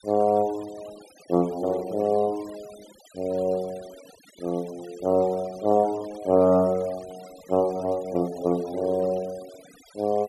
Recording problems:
noise reduction artefacts; signal-to-artefact ratio 24 dB

